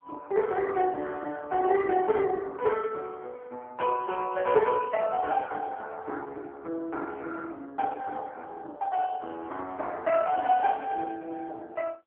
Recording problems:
phone line; 300 Hz to 3.1 kHz, AMR-NB

